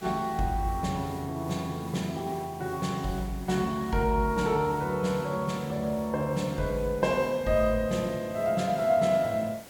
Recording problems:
background hiss; slope -4 dB per octave, SNR 20 dB

